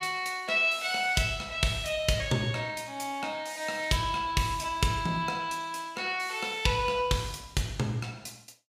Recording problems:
none

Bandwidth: 15 kHz